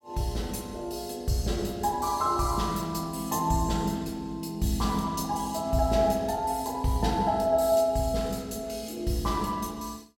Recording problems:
none

